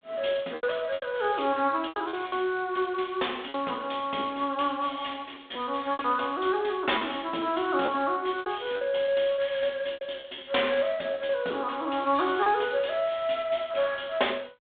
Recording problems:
telephone audio; 300 Hz to 3.6 kHz, G.726
packet loss; 7% of the sound replaced, filled with repeated pitch periods

